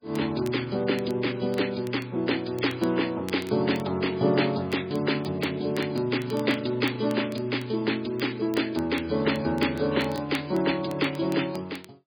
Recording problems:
lossy compression; MP3, log-spectral distance 7 dB
crackling; vinyl, SNR 23 dB

